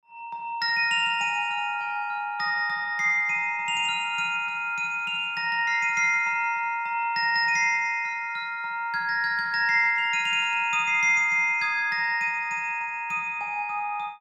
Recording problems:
none

